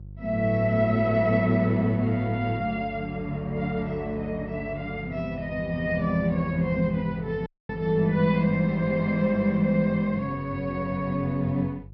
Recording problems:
treble missing; nothing above 5.5 kHz
hum; 50 Hz, harmonics up to 350 Hz, SNR 17 dB
dropout; at 7.5 s

